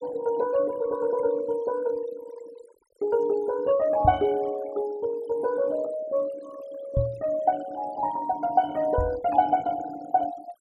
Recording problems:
noise reduction artefacts; signal-to-artefact ratio 20 dB
microphone bump; at 4 s, at 7 s and at 9 s; peak +3 dB vs average level

